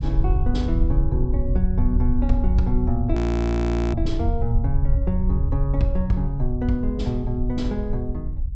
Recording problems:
treble missing; nothing above 8 kHz
low-frequency rumble; below 70 Hz, SNR -1 dB
audio freezing; at 3 s for 1 s

